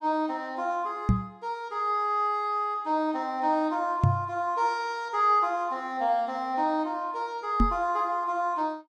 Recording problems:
microphone bump; at 1 s, at 4 s and at 7.5 s; peak +8 dB vs average level

